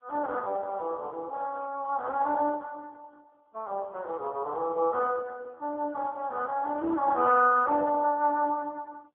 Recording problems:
phone line; 260 Hz to 2.5 kHz, AMR-NB

